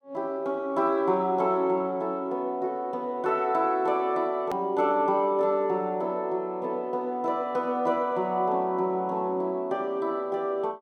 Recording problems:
hard cut with a click; at 4.5 s

